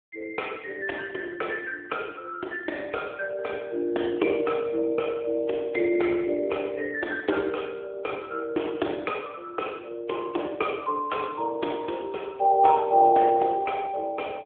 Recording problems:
phone line; 260 Hz to 3.5 kHz, AMR-NB

